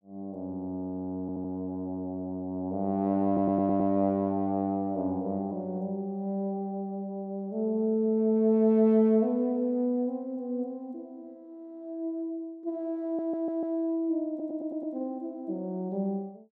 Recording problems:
audio stuttering; 4 times, first at 1 s

